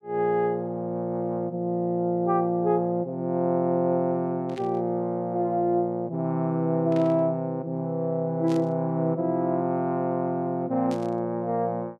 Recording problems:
burst of static; 4 times, first at 4.5 s; peak -12 dB vs average level

